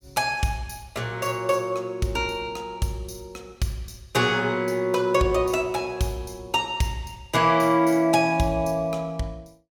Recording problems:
none

